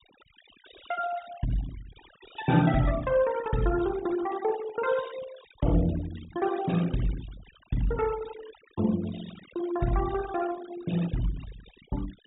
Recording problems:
treble cut off; nothing above 4 kHz
noise reduction artefacts; signal-to-artefact ratio 15 dB

